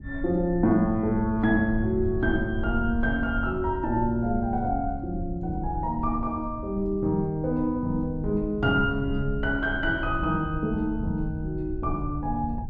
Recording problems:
rumble; below 88 Hz, SNR 9 dB

